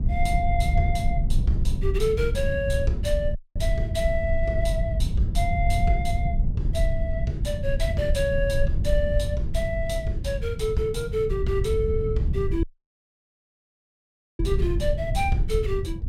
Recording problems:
low-frequency rumble; below 90 Hz, SNR -1 dB
audio cutting out; at 3.5 s and at 13 s for 2 s

